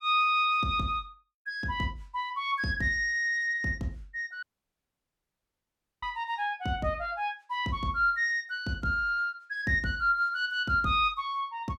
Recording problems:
audio cutting out; at 4.5 s for 1.5 s

